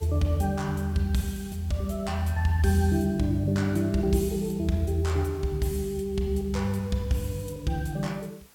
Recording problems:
background hiss; slope -1 dB per octave, SNR 27 dB

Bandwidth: 17 kHz